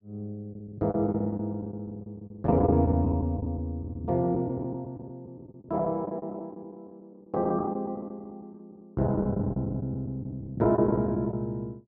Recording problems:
packet loss; 14% of the sound replaced, filled with the last packet

